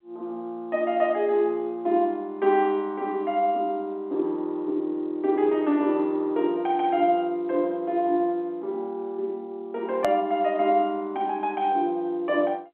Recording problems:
telephone audio; 240 Hz to 3.5 kHz, G.711
edit click; at 10 s

